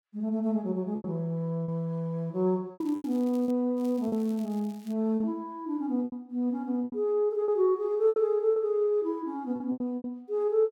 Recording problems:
lost packets; 9% of the sound replaced, filled with repeated pitch periods
crackling; at 3 s and from 4 to 5 s; loose cable, SNR 27 dB

